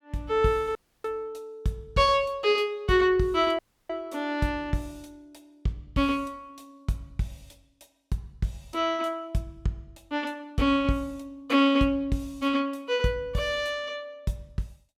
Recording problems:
dropout; at 1 s and at 3.5 s

